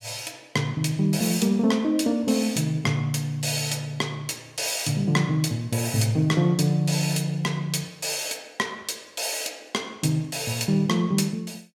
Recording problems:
none

